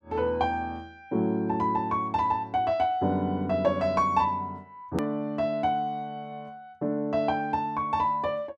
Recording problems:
edit click; at 5 s

